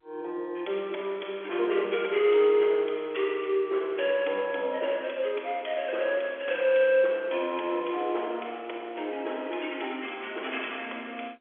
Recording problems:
phone line; 280 Hz to 3.4 kHz, G.711

